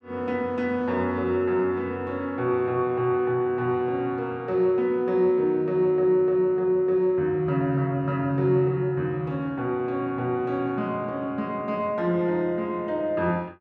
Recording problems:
none

